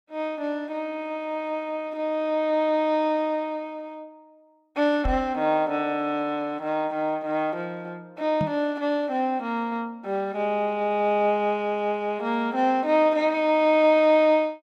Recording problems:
microphone thump; at 5 s and at 8.5 s; peak -1 dB vs average level

